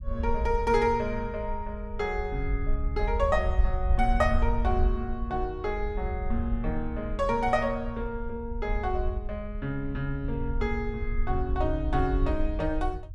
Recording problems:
rumble; below 64 Hz, SNR 3 dB

